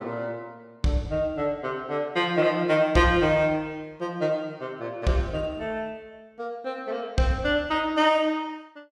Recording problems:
none

